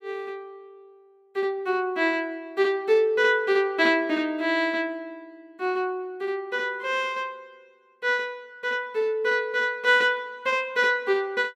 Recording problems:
none

